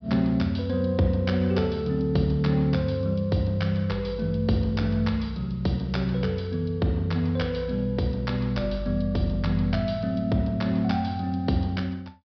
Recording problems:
treble missing; nothing above 5.5 kHz

